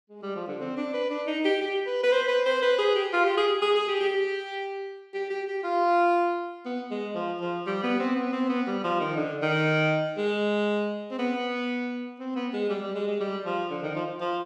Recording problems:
none

